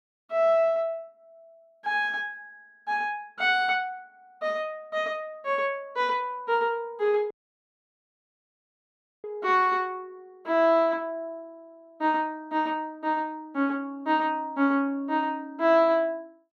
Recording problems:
audio cutting out; at 7.5 s for 2 s

